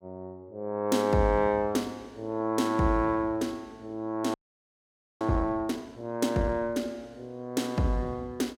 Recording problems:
audio freezing; at 4.5 s for 1 s

